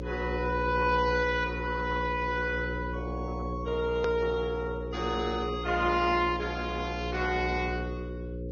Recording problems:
treble missing; nothing above 6.3 kHz
codec artefacts; Vorbis, log-spectral distance 2 dB
hum; 60 Hz, harmonics up to 540 Hz, SNR 6 dB
edit click; at 4 s

